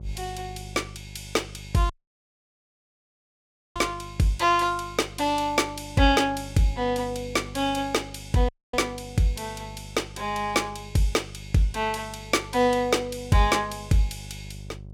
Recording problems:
hum; 50 Hz, harmonics up to 600 Hz, SNR 17 dB
audio cutting out; at 2 s for 2 s and at 8.5 s

